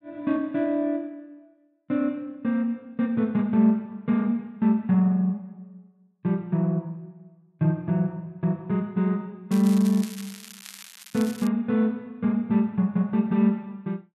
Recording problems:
crackling; from 9.5 to 11 s; loose cable, SNR 17 dB

